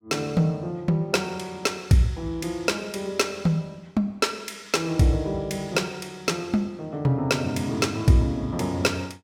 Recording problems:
none

